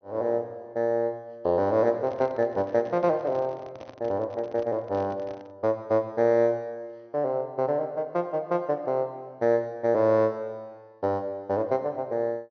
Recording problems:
low-pass filter; nothing above 6.3 kHz
handling noise; from 2 to 5.5 s; peak -13 dB vs average level

